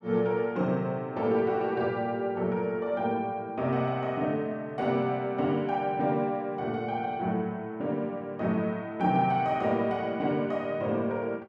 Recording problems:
none

